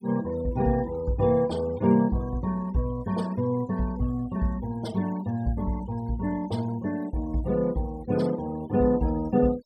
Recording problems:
denoising artefacts; signal-to-artefact ratio 21 dB

